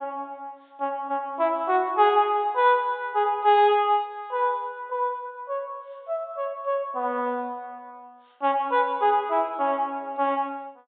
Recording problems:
low-pass filter; nothing above 4 kHz

